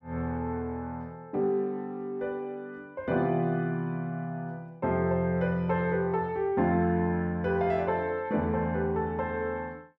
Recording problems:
none

